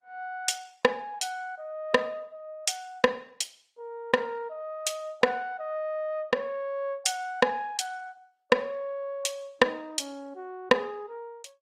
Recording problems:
codec artefacts; Opus, log-spectral distance 2 dB, nothing above 16.6 kHz

